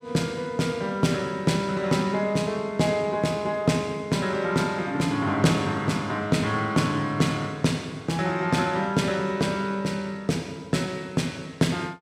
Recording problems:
none

